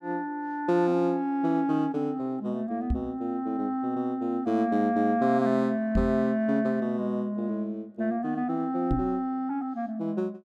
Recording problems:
microphone bump; at 3 s, at 6 s and at 9 s; peak +3 dB vs average level

